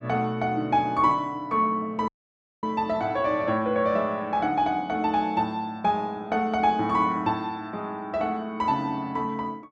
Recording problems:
audio cutting out; at 2 s for 0.5 s

